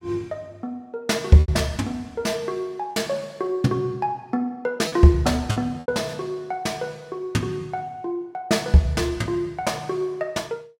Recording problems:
packet loss; 3% of the sound replaced, filled with repeated pitch periods

